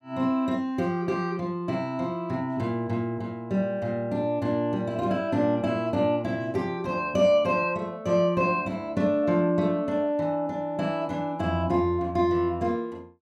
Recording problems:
none

